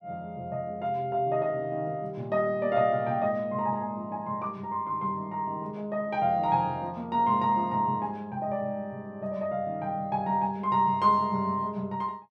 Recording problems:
none

